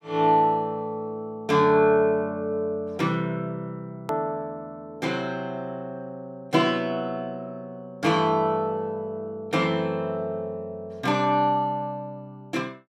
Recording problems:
hard cut with a click; at 4 s

